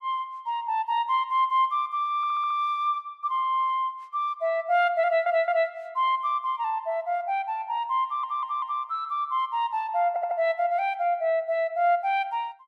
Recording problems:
audio stuttering; 4 times, first at 2 s

